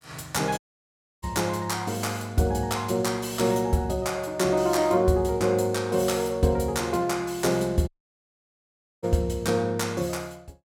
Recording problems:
dropout; at 0.5 s for 0.5 s and at 8 s for 1 s

